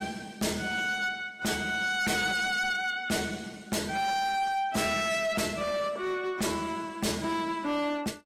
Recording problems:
codec artefacts; AAC, log-spectral distance 4 dB
distorted audio; hard clipping, signal-to-distortion ratio 6 dB

